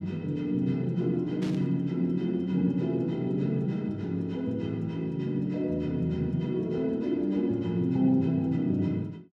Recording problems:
burst of static; at 1.5 s; peak -11 dB vs average level

